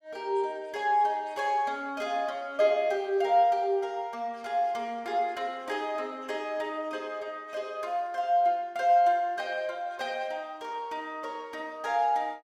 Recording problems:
none

